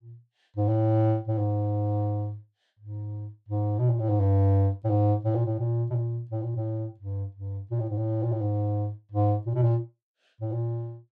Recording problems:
none

